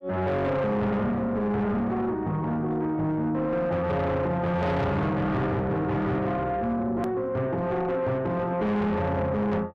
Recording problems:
distortion; soft clipping, signal-to-distortion ratio 8 dB
hard cut with a click; at 7 s

